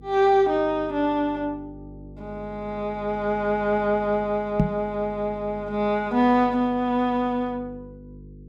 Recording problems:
electrical hum; 50 Hz, harmonics up to 500 Hz, SNR 20 dB
knock on the microphone; at 4.5 s; peak +6 dB vs average level

